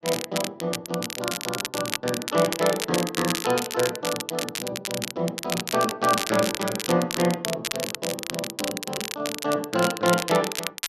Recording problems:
crackling; vinyl, SNR 4 dB

